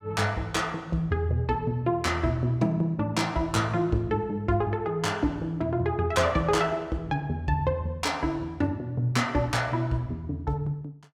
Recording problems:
none

